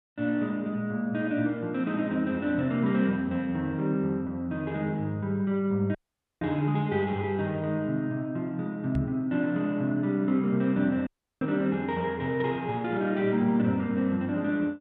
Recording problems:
audio cutting out; at 6 s and at 11 s
microphone bump; at 9 s; peak +1 dB vs average level

